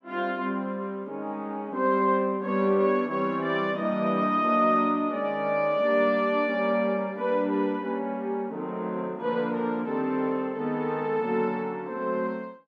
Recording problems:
none

